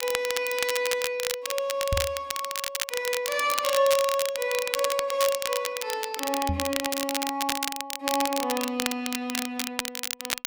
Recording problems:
crackle; vinyl, SNR 3 dB
microphone bump; at 2 s and at 6.5 s; peak +3 dB vs average level

